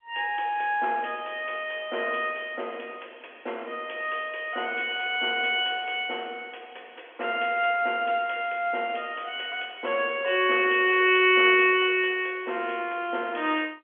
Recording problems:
telephone audio; 280 Hz to 3.3 kHz, G.711

